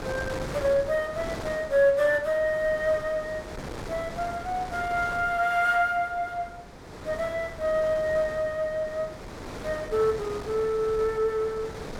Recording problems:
wind on the microphone; below 1.2 kHz, SNR 13 dB

